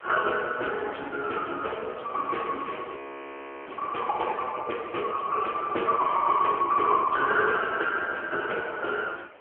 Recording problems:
phone line; 320 Hz to 3.3 kHz, AMR-NB
wind on the microphone; below 2.3 kHz, SNR 21 dB
audio freezing; at 3 s for 0.5 s

